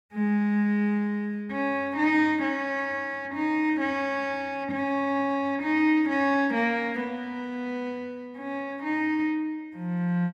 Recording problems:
none

